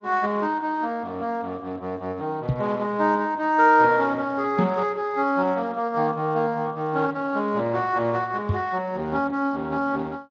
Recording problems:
codec artefacts; MP3, then Speex, log-spectral distance 2 dB
microphone bump; at 2.5 s, at 4.5 s and at 8.5 s; peak +2 dB vs average level

